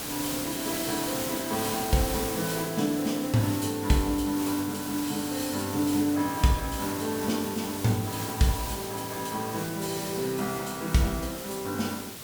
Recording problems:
background hiss; slope -2 dB per octave, SNR 6 dB

